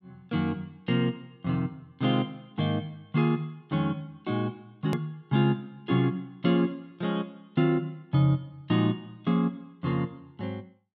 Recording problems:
edit click; at 5 s

